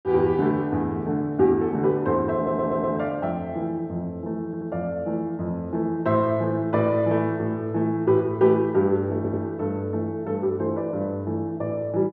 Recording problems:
audio stuttering; at 2.5 s, at 4.5 s and at 9 s

